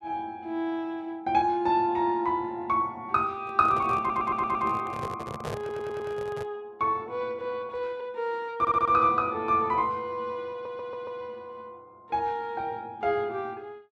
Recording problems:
microphone handling noise; from 3.5 to 6.5 s; peak -3 dB vs average level
audio stuttering; 4 times, first at 4 s

